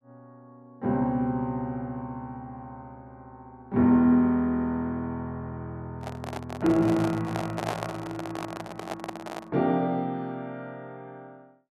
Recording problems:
microphone handling noise; from 6 to 9.5 s; peak +1 dB vs average level

